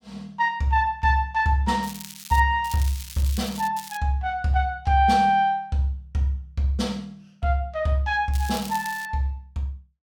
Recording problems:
crackle; 4 times, first at 2 s; loose cable, SNR 15 dB

